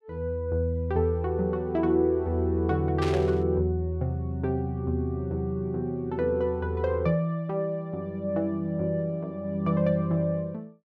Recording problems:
static burst; at 3 s; peak -4 dB vs average level

